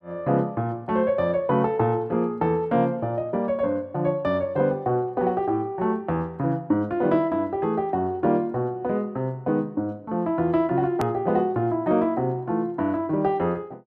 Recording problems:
click at an edit; at 11 s

